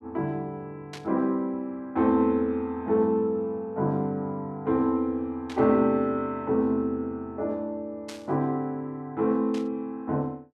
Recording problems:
burst of static; 4 times, first at 1 s; peak -9 dB vs average level

